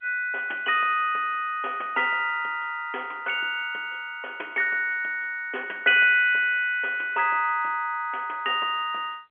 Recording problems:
phone line; 300 Hz to 3.3 kHz, G.711

